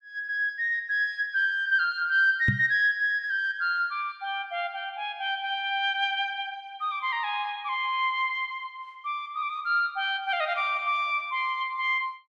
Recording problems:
microphone bump; at 2.5 s; peak +5 dB vs average level

